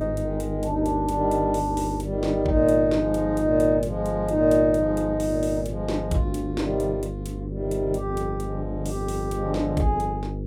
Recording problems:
electrical hum; 50 Hz, harmonics up to 500 Hz, SNR 8 dB

